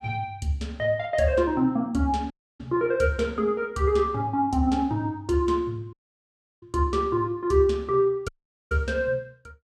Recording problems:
audio cutting out; at 2.5 s, at 6 s for 0.5 s and at 8.5 s

